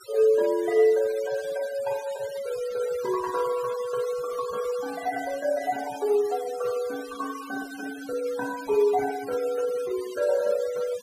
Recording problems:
denoising artefacts; signal-to-artefact ratio 17 dB

